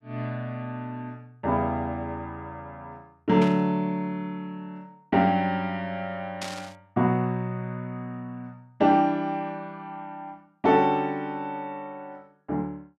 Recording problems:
burst of static; at 3.5 s and at 6.5 s; peak -3 dB vs average level

